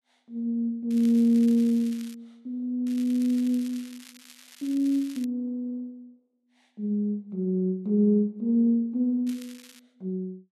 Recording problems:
crackling; from 1 to 2 s, from 3 to 5 s and at 9.5 s; loose cable, SNR 22 dB

